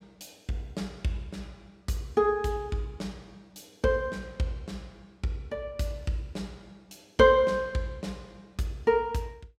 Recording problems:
none

